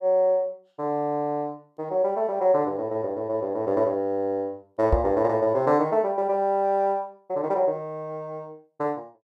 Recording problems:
microphone thump; at 5 s; peak +5 dB vs average level

